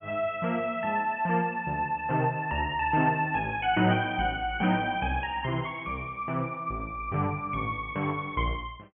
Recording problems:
treble missing; nothing above 3.2 kHz

